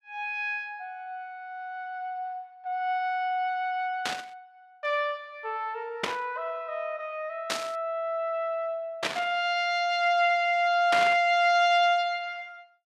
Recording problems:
static burst; 5 times, first at 4 s; peak +4 dB vs average level

